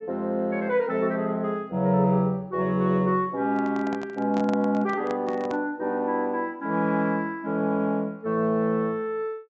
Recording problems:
low-pass filter; nothing above 8 kHz
microphone handling noise; from 3.5 to 5.5 s; peak -6 dB vs average level

